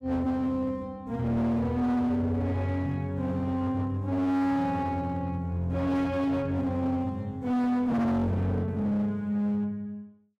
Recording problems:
distorted audio; hard clipping, signal-to-distortion ratio 7 dB

